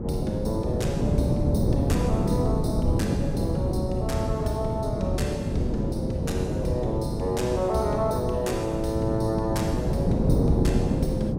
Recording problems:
wind on the microphone; below 270 Hz, SNR -3 dB

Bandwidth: 16 kHz